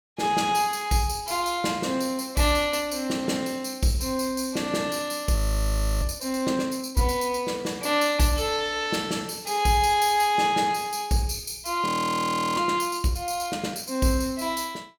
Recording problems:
audio freezing; at 5.5 s for 0.5 s and at 12 s for 0.5 s

